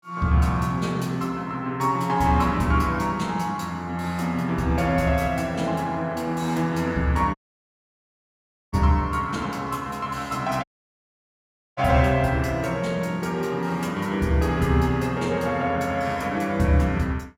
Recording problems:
dropout; at 7.5 s for 1.5 s and at 11 s for 1 s

